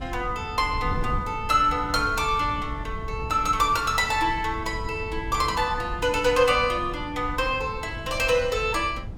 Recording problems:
wind on the microphone; below 130 Hz, SNR 12 dB

